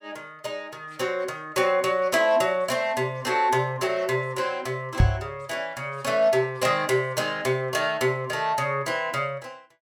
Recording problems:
microphone thump; at 5 s; peak +8 dB vs average level

